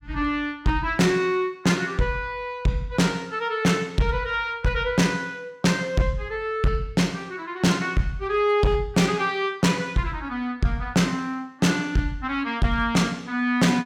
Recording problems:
distortion; hard clipping, signal-to-distortion ratio 11 dB

